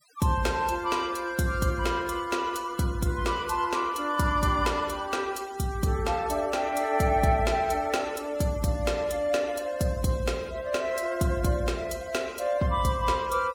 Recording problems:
noise reduction artefacts; signal-to-artefact ratio 21 dB

